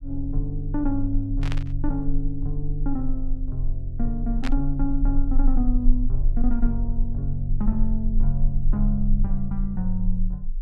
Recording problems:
low-frequency rumble; below 32 Hz, strongest tone 22 Hz, SNR 1 dB
static burst; at 1.5 s and at 4.5 s; peak -1 dB vs average level

